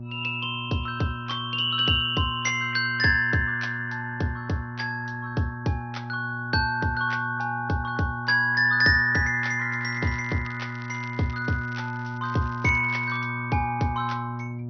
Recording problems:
low-pass filter; nothing above 5.5 kHz
lossy compression; Vorbis, log-spectral distance 2 dB
hum; 60 Hz, harmonics up to 600 Hz, SNR 10 dB
crackling; from 10 to 13 s; loose cable, SNR 27 dB

